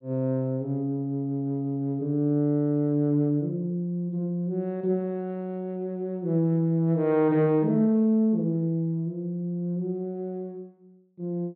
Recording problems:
treble missing; nothing above 4.4 kHz

